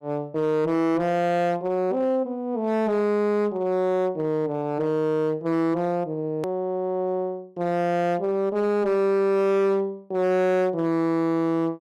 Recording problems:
distortion; hard clipping, signal-to-distortion ratio 11 dB
hard cut with a click; at 6.5 s

